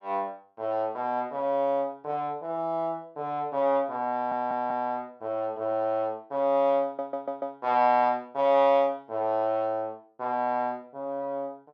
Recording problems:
stutter; at 4 s and at 7 s

